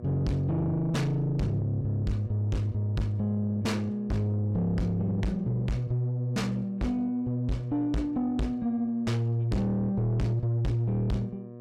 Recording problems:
distortion; soft clipping, signal-to-distortion ratio 6 dB
mains hum; 60 Hz, harmonics up to 1.1 kHz, SNR 17 dB

